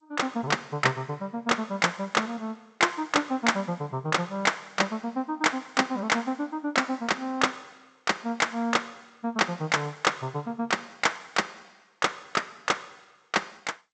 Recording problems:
lossy codec; G.722, log-spectral distance 5 dB, nothing above 7.8 kHz

